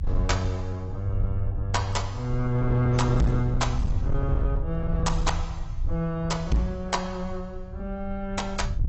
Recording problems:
lossy compression; AAC, log-spectral distance 2 dB, nothing above 8 kHz
distortion; hard clipping, signal-to-distortion ratio 10 dB
low-frequency rumble; below 80 Hz, SNR 4 dB

